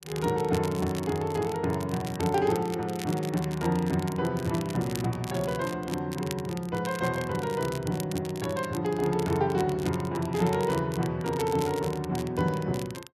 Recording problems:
crackle; vinyl, SNR 15 dB

